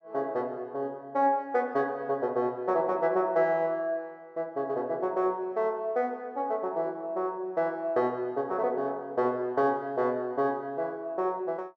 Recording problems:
none

